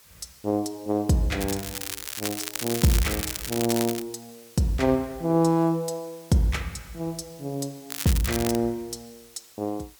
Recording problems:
hiss; slope +1 dB per octave, SNR 23 dB
crackle; from 1.5 to 4 s and at 8 s; loose cable, SNR 5 dB

